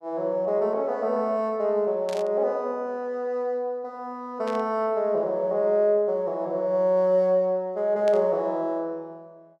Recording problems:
static burst; at 2 s, at 4.5 s and at 8 s; peak -11 dB vs average level

